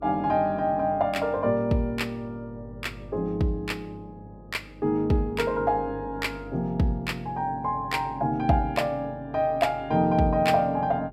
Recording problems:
hum; 50 Hz, harmonics up to 500 Hz, SNR 20 dB

